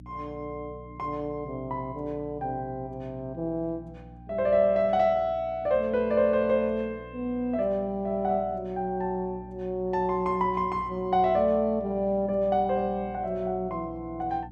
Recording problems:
hum; 60 Hz, harmonics up to 300 Hz, SNR 19 dB

